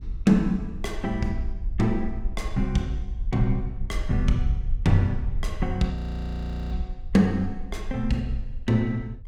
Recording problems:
rumble; below 50 Hz, SNR 8 dB
audio freezing; at 6 s for 1 s

